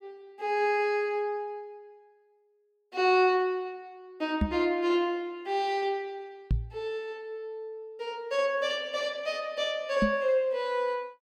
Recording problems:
microphone bump; at 4.5 s, at 6.5 s and at 10 s; peak +5 dB vs average level

